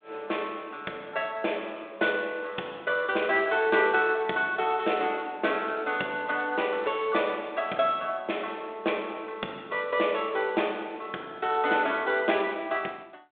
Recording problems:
phone line; 280 Hz to 3.6 kHz, G.726

